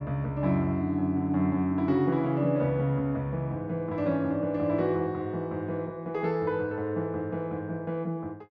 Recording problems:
none

